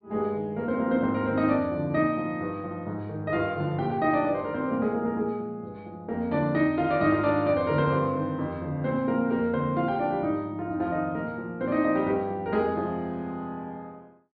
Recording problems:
treble missing; nothing above 4.8 kHz

